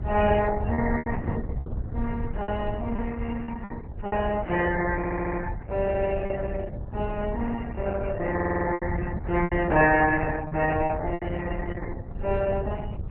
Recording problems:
lossy compression; MP3, then Opus, log-spectral distance 3 dB, nothing above 2.9 kHz
rumble; below 110 Hz, SNR 5 dB
lost packets; 7% of the sound replaced, filled with repeated pitch periods
audio stuttering; at 5 s and at 8.5 s

